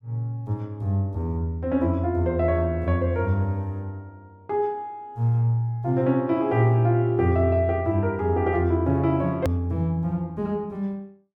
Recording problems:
edit click; at 9.5 s

